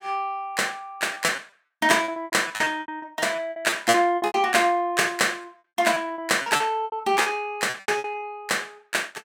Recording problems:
packet loss; 15% of the sound replaced, filled with repeated pitch periods

